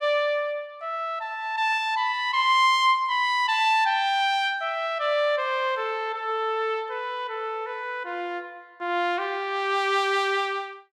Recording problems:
none

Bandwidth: 15 kHz